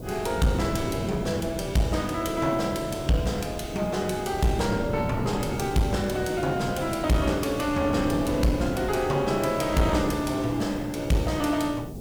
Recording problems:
distorted audio; hard clipping, uneven, signal-to-distortion ratio 10 dB
hiss; SNR 26 dB
wind on the microphone; below 350 Hz, SNR 8 dB

